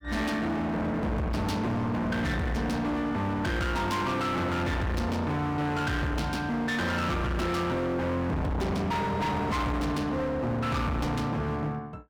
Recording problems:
distortion; hard clipping, signal-to-distortion ratio 6 dB

